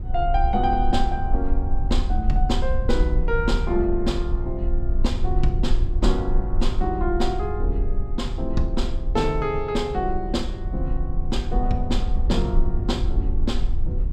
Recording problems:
low-frequency rumble; below 54 Hz, SNR 0 dB

